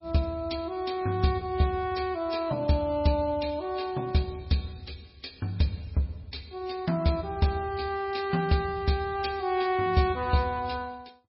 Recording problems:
codec artefacts; MP3, log-spectral distance 6 dB, nothing above 5.3 kHz

